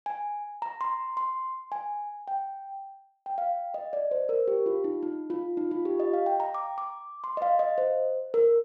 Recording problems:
none

